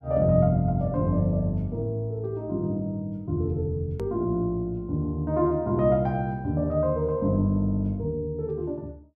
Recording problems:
edit click; at 4 s

